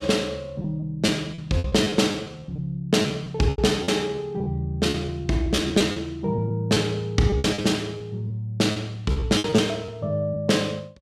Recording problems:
packet loss; 12% of the sound replaced, filled with repeated pitch periods

